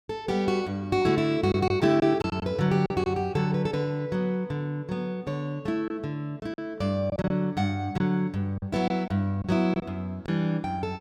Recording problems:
lost packets; 5% of the sound replaced, filled with silence

